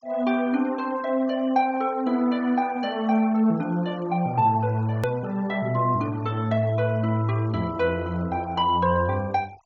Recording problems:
treble missing; nothing above 7.4 kHz
noise reduction artefacts; signal-to-artefact ratio 25 dB
edit click; at 5 s

